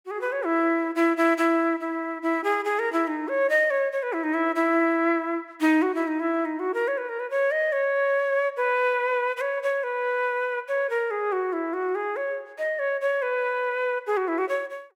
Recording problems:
none

